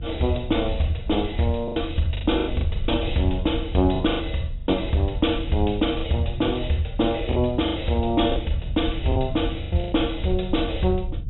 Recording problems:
treble cut off; nothing above 3.9 kHz
rumble; below 82 Hz, SNR 8 dB
packet loss; 8% of the sound replaced, filled with the last packet

